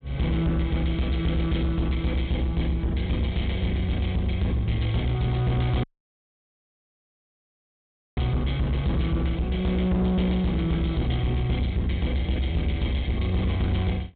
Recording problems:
low-pass filter; nothing above 4 kHz
distorted audio; soft clipping, signal-to-distortion ratio 11 dB
audio cutting out; at 6 s for 2.5 s

